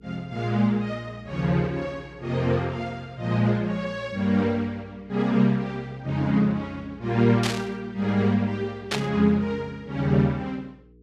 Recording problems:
mains hum; 60 Hz, harmonics up to 480 Hz, SNR 26 dB
static burst; at 7.5 s and at 9 s; peak +2 dB vs average level

